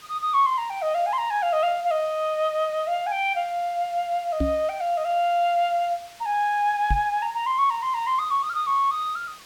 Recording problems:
background hiss; slope 0 dB per octave, SNR 22 dB
microphone thump; at 4.5 s and at 7 s; peak +2 dB vs average level

